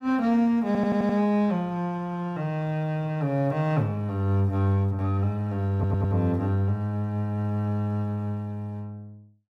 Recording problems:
audio stuttering; at 0.5 s and at 5.5 s

